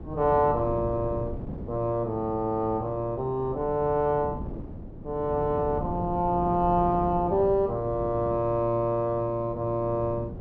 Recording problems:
wind noise; below 300 Hz, SNR 11 dB

